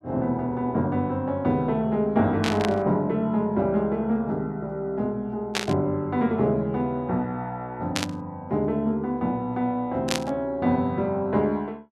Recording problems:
static burst; 4 times, first at 2.5 s; peak +4 dB vs average level

